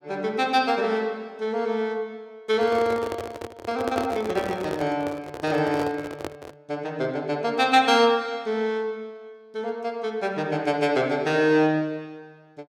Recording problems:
handling noise; from 2.5 to 6.5 s; peak -1 dB vs average level

